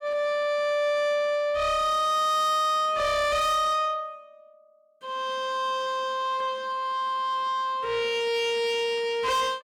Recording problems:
distortion; soft clipping, signal-to-distortion ratio 7 dB

